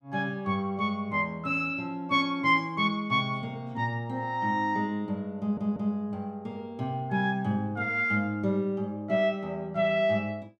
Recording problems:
audio stuttering; at 5.5 s

